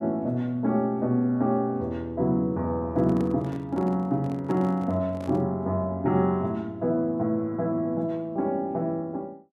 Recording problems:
handling noise; from 3 to 5.5 s; peak -9 dB vs average level

